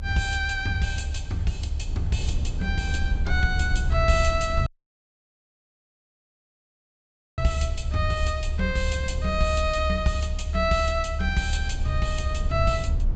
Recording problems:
treble missing; nothing above 8 kHz
rumble; below 74 Hz, SNR 2 dB
dropout; at 4.5 s for 2.5 s

